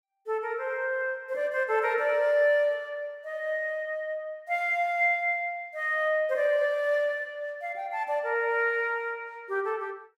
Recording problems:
none

